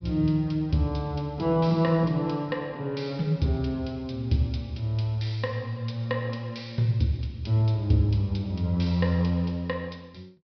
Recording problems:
treble missing; nothing above 5.5 kHz

